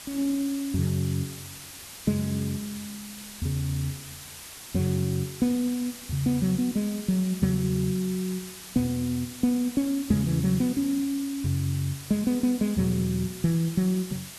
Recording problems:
hiss; slope +1 dB per octave, SNR 13 dB

